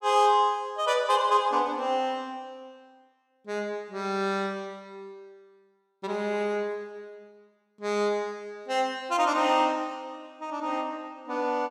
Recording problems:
none

